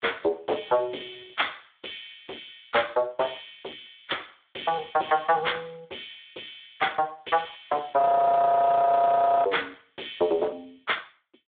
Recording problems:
phone line; 300 Hz to 3.5 kHz, Speex
distortion; hard clipping, signal-to-distortion ratio 13 dB
frozen audio; at 8 s for 1.5 s

